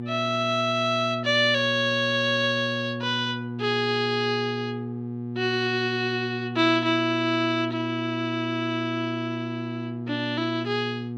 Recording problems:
hum; 60 Hz, harmonics up to 840 Hz, SNR 8 dB

